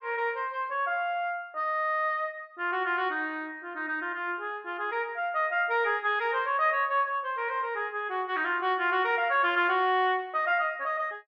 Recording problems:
none

